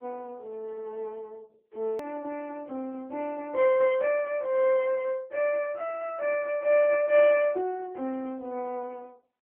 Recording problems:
telephone audio; 320 Hz to 3.1 kHz, AMR-NB
hard cut with a click; at 2 s

